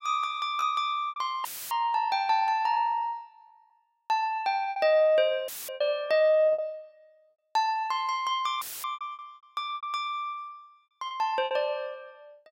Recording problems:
lost packets; 7% of the sound replaced, filled with repeated pitch periods
dropout; at 1.5 s, at 5.5 s and at 8.5 s; filled with static

